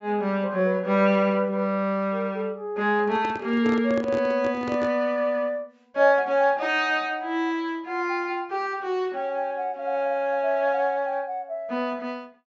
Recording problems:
low-pass filter; nothing above 8 kHz
handling noise; from 3 to 5 s; peak -5 dB vs average level

